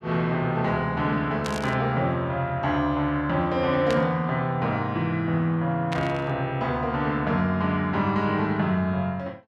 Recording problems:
static burst; at 1.5 s, at 4 s and at 6 s; peak -3 dB vs average level

